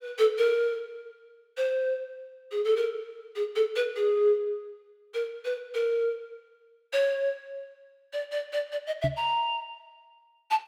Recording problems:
microphone bump; at 9 s; peak +2 dB vs average level

